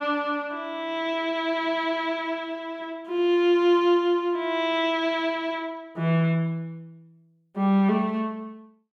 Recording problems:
none

